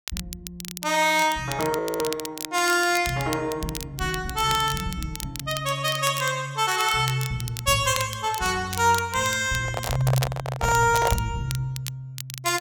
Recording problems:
crackling; vinyl, SNR 12 dB
frozen audio; at 2 s
handling noise; from 9.5 to 11 s; peak +2 dB vs average level

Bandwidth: 17 kHz